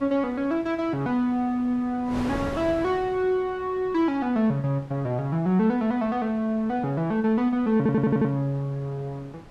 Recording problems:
wind noise; below 860 Hz, SNR 17 dB
audio stuttering; at 8 s

